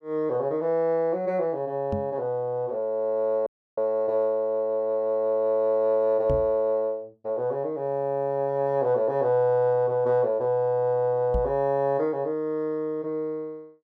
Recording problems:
knock on the microphone; at 2 s, at 6.5 s and at 11 s; peak 0 dB vs average level
audio cutting out; at 3.5 s

